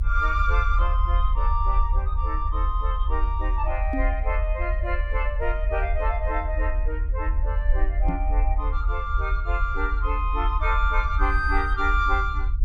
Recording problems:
low-frequency rumble; below 54 Hz, strongest tone 40 Hz, SNR -2 dB
microphone bump; at 4 s and at 8 s; peak +3 dB vs average level

